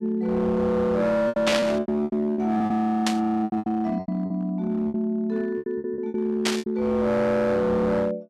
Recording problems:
distorted audio; hard clipping, uneven, signal-to-distortion ratio 11 dB
packet loss; 13% of the sound replaced, filled with repeated pitch periods
burst of static; at 1.5 s, at 3 s and at 6.5 s; peak +4 dB vs average level

